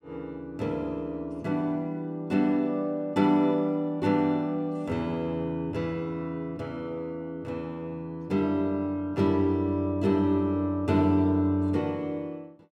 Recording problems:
none

